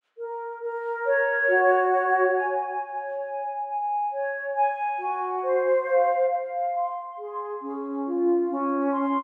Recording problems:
none

